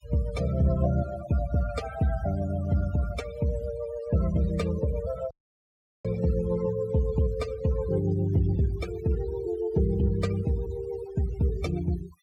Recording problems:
denoising artefacts; signal-to-artefact ratio 17 dB
dropout; at 5.5 s for 0.5 s

